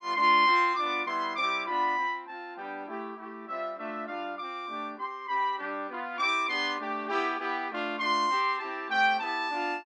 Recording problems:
none

